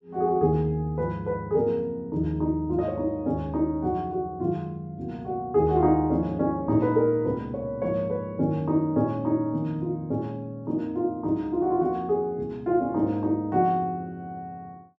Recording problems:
none

